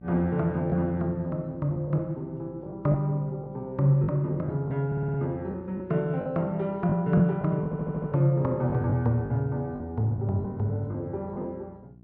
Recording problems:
electrical hum; 60 Hz, harmonics up to 720 Hz, SNR 23 dB
lost packets; 6% of the sound replaced, filled with the last packet
stutter; at 5 s and at 7.5 s

